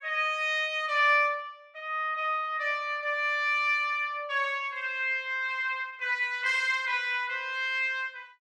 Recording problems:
none

